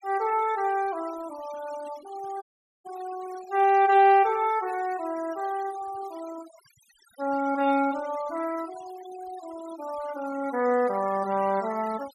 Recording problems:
noise reduction artefacts; signal-to-artefact ratio 19 dB
audio cutting out; at 2.5 s

